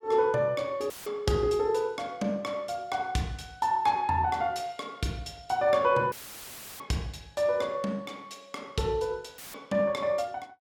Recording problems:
audio cutting out; at 1 s, at 6 s for 0.5 s and at 9.5 s; filled with static

